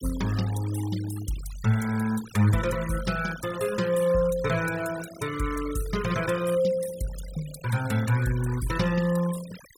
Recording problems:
noise reduction artefacts; signal-to-artefact ratio 14 dB

